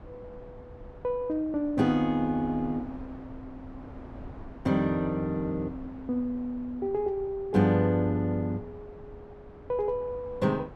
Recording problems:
wind noise; below 500 Hz, SNR 18 dB

